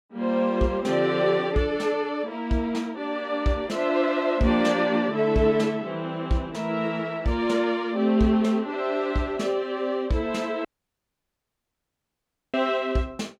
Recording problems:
dropout; at 11 s for 2 s

